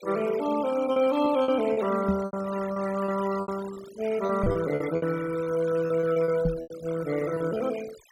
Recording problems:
denoising artefacts; signal-to-artefact ratio 16 dB
packet loss; 12% of the sound replaced, filled with repeated pitch periods
knock on the microphone; at 2 s, at 4.5 s and at 6.5 s; peak +3 dB vs average level

